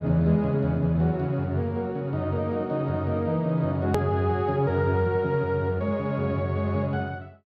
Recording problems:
click at an edit; at 4 s

